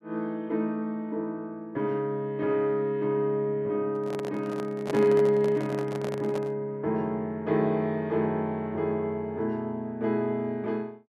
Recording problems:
handling noise; from 4 to 6.5 s; peak -2 dB vs average level

